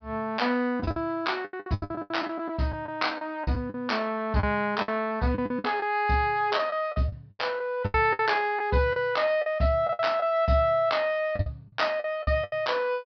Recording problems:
treble cut off; nothing above 5.5 kHz
lost packets; 12% of the sound replaced, filled with the last packet

